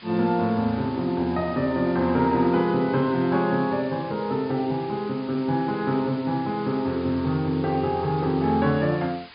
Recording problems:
low-pass filter; nothing above 5 kHz
hiss; SNR 21 dB

